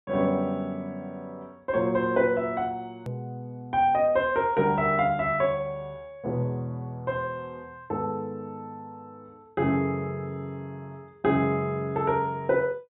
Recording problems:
low-pass filter; nothing above 4 kHz
edit click; at 3 s

